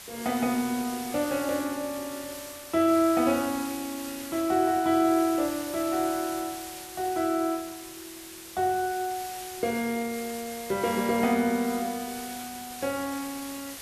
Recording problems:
background hiss; slope +1 dB per octave, SNR 12 dB

